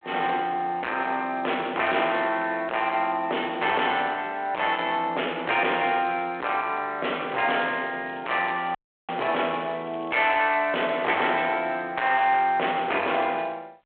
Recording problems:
phone line; 300 Hz to 3.5 kHz, G.726
distorted audio; soft clipping, signal-to-distortion ratio 8 dB
crackle; from 7.5 to 10 s and at 12 s; loose cable, SNR 27 dB
audio cutting out; at 9 s

